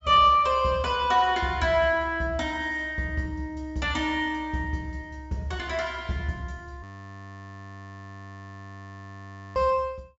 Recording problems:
treble missing; nothing above 8 kHz
audio freezing; at 7 s for 2.5 s

